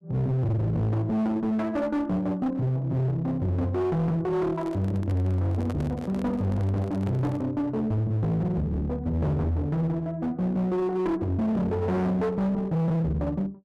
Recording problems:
distortion; hard clipping, uneven, signal-to-distortion ratio 7 dB
handling noise; from 4.5 to 7.5 s; peak -8 dB vs average level

